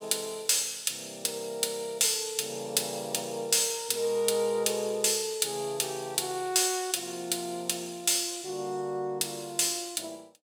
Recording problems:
none

